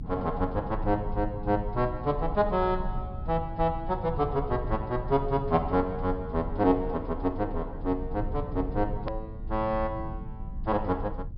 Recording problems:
treble missing; nothing above 5.5 kHz
rumble; below 96 Hz, strongest tone 28 Hz, SNR 8 dB
hard cut with a click; at 9 s

